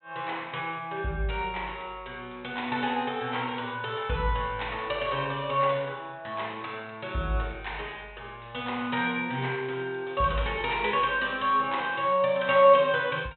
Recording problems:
treble cut off; nothing above 3.8 kHz

